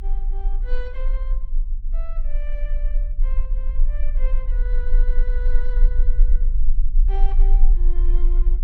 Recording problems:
rumble; below 32 Hz, strongest tone 26 Hz, SNR -17 dB

